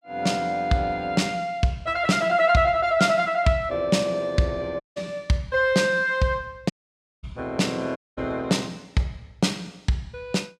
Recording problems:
dropout; at 5 s, at 6.5 s for 0.5 s and at 8 s

